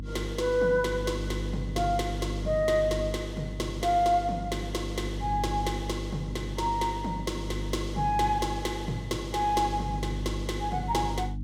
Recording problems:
mains hum; 50 Hz, harmonics up to 300 Hz, SNR 6 dB

